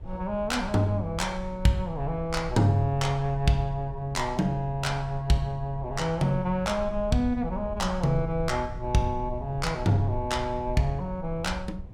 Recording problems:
low-frequency rumble; below 78 Hz, SNR 12 dB

